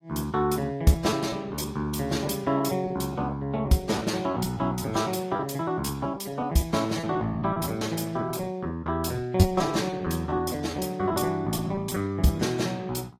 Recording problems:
codec artefacts; AAC, log-spectral distance 3 dB, nothing above 14.7 kHz
packet loss; 11% of the sound replaced, filled with repeated pitch periods

